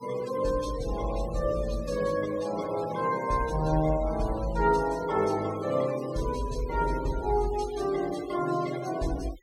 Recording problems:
noise reduction artefacts; signal-to-artefact ratio 16 dB

